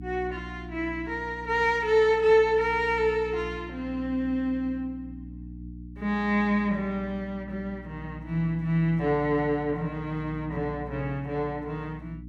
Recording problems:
electrical hum; 60 Hz, harmonics up to 300 Hz, SNR 15 dB

